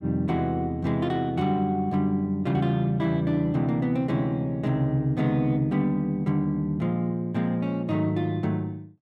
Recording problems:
none

